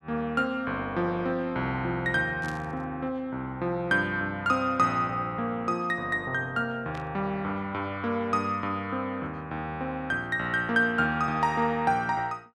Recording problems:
burst of static; at 2.5 s and at 7 s; peak -11 dB vs average level

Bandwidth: 14 kHz